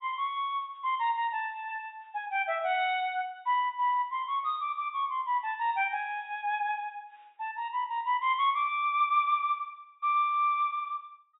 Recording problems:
treble cut off; nothing above 4 kHz

